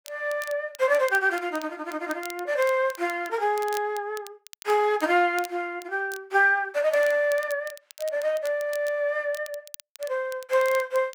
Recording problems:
crackle; vinyl, SNR 20 dB

